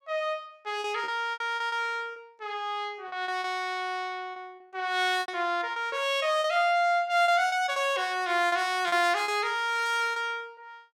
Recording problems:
packet loss; 9% of the sound replaced, filled with repeated pitch periods

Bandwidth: 17 kHz